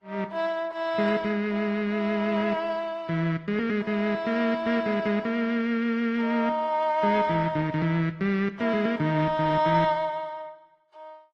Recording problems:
lossy codec; Opus, then AAC, log-spectral distance 2 dB

